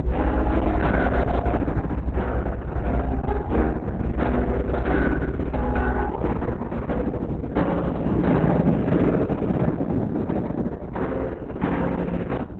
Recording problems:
codec artefacts; Opus, then Opus, log-spectral distance 3 dB
low-frequency rumble; below 66 Hz, strongest tone 64 Hz, SNR 5 dB
wind on the microphone; below 410 Hz, SNR 0 dB

